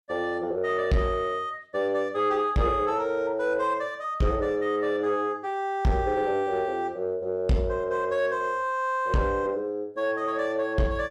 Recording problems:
distortion; soft clipping, signal-to-distortion ratio 12 dB

